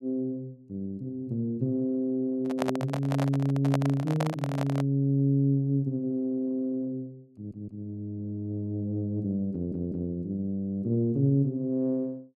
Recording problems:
microphone handling noise; from 2.5 to 5 s; peak +2 dB vs average level
stutter; at 7.5 s and at 9.5 s

